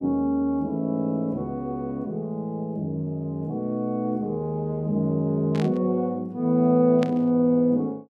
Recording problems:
burst of static; at 5.5 s and at 7 s; peak -7 dB vs average level

